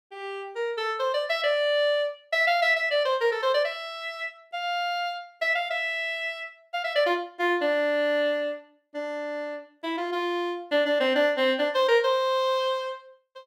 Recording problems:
none

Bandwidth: 16 kHz